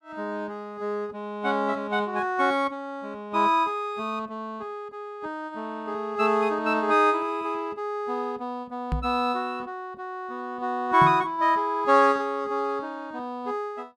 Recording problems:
knock on the microphone; at 9 s and at 11 s; peak +2 dB vs average level

